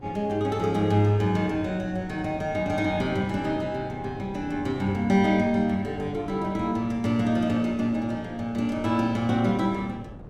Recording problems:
wind on the microphone; below 320 Hz, SNR 18 dB

